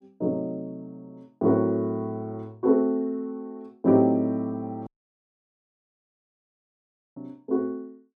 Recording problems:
dropout; at 5 s for 2.5 s

